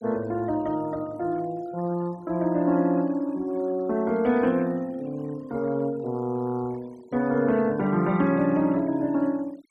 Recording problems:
noise reduction artefacts; signal-to-artefact ratio 24 dB

